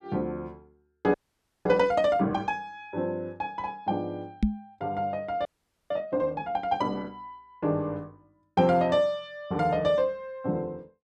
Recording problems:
frozen audio; at 1 s for 0.5 s and at 5.5 s
knock on the microphone; at 4.5 s; peak +8 dB vs average level

